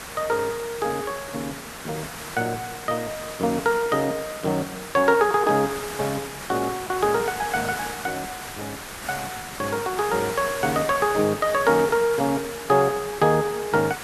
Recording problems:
background hiss; SNR 10 dB

